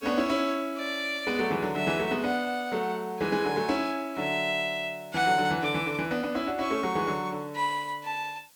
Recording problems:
hiss; slope +2 dB per octave, SNR 26 dB

